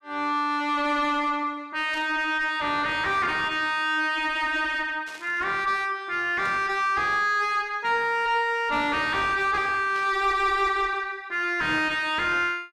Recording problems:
distorted audio; soft clipping, signal-to-distortion ratio 9 dB
static burst; 4 times, first at 2 s; peak -14 dB vs average level

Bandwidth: 14 kHz